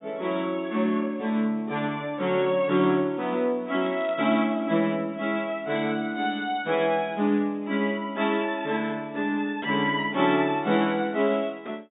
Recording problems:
treble missing; nothing above 4 kHz
crackle; at 3.5 s; loose cable, SNR 26 dB

